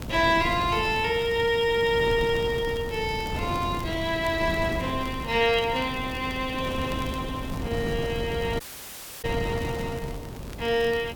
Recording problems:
hiss; slope +3 dB per octave, SNR 27 dB
wind noise; below 370 Hz, SNR 8 dB
crackle; vinyl, SNR 23 dB
audio cutting out; at 8.5 s for 0.5 s

